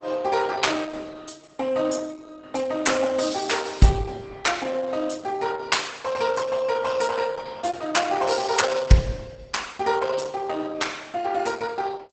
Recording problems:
codec artefacts; Opus, log-spectral distance 5 dB, nothing above 8 kHz

